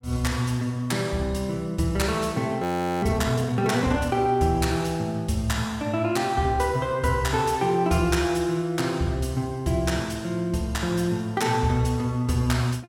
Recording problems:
frozen audio; at 2.5 s

